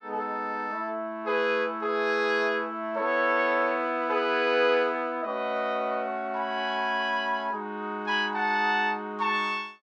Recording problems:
none

